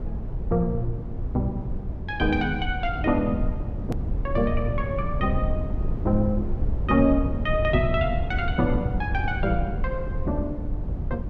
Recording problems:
low-frequency rumble; below 110 Hz, SNR 3 dB
click at an edit; at 4 s

